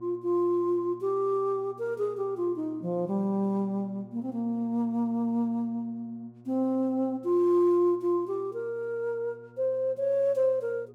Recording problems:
mains hum; 60 Hz, harmonics up to 1.1 kHz, SNR 23 dB

